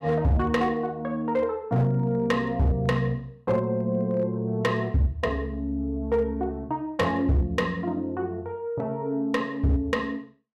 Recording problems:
distorted audio; hard clipping, signal-to-distortion ratio 11 dB

